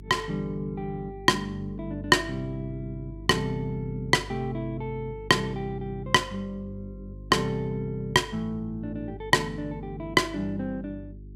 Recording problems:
hum; 50 Hz, harmonics up to 400 Hz, SNR 15 dB

